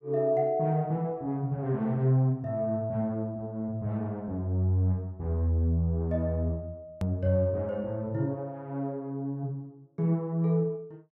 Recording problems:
hard cut with a click; at 7 s

